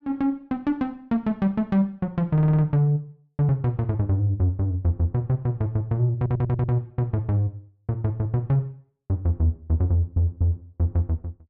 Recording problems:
audio stuttering; at 2.5 s, at 6 s and at 10 s

